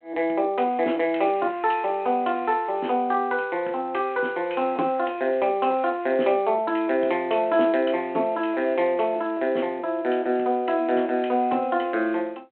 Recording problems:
telephone audio; 220 Hz to 3.5 kHz, G.726

